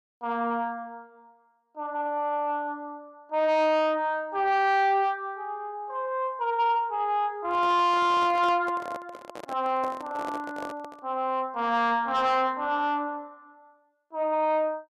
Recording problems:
distorted audio; soft clipping, signal-to-distortion ratio 10 dB
handling noise; from 7.5 to 11 s; peak -7 dB vs average level

